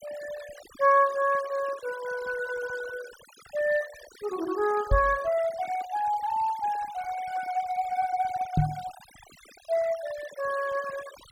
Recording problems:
noise reduction artefacts; signal-to-artefact ratio 18 dB
knock on the microphone; at 5 s and at 8.5 s; peak +7 dB vs average level

